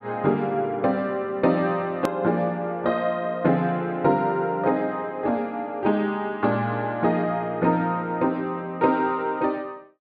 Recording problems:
treble missing; nothing above 4.8 kHz
click at an edit; at 2 s

